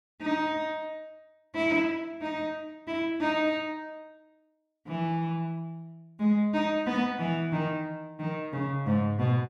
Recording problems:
none

